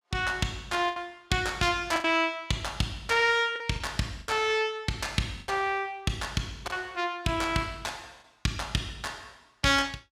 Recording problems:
lost packets; 5% of the sound replaced, filled with the last packet

